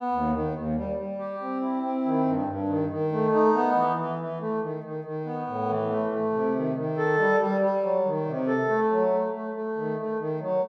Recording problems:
none

